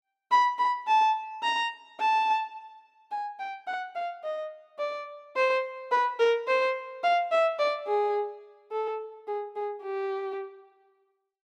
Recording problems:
none

